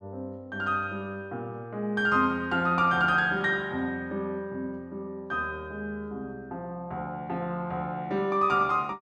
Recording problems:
none

